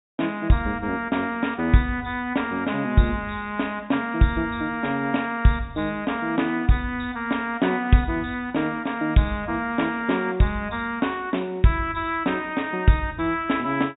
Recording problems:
treble missing; nothing above 4 kHz

